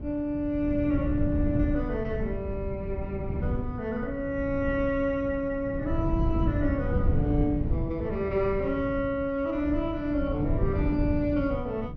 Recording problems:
treble missing; nothing above 6.1 kHz
wind noise; below 150 Hz, SNR 3 dB

